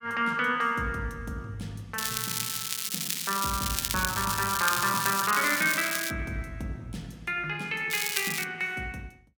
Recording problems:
crackle; from 2 to 6 s and at 8 s; loose cable, SNR 1 dB

